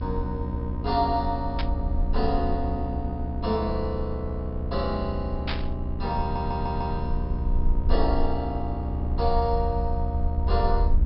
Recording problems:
treble cut off; nothing above 5.2 kHz
hum; 60 Hz, harmonics up to 1.3 kHz, SNR 5 dB
low-frequency rumble; below 74 Hz, SNR 1 dB
burst of static; at 1.5 s and at 5.5 s; peak +3 dB vs average level
stutter; at 6 s

